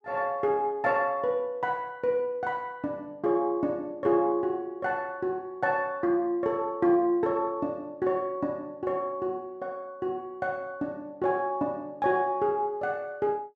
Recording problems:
none

